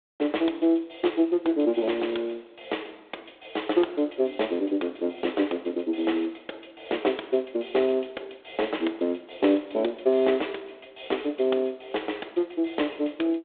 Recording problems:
telephone audio; 260 Hz to 3.6 kHz, G.726

